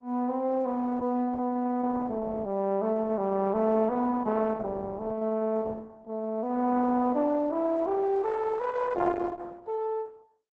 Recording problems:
codec artefacts; Opus, log-spectral distance 3 dB

